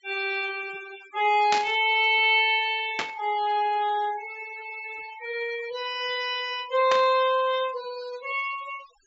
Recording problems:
treble cut off; nothing above 8 kHz
noise reduction artefacts; signal-to-artefact ratio 17 dB
burst of static; at 1.5 s, at 3 s and at 7 s; peak +1 dB vs average level

